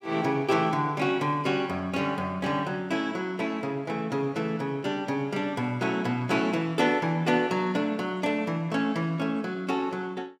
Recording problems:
none

